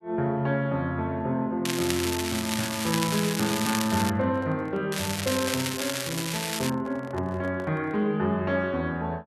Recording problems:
crackling; from 1.5 to 4 s and from 5 to 6.5 s; loose cable, SNR 3 dB
microphone handling noise; from 4 to 8 s; peak -7 dB vs average level

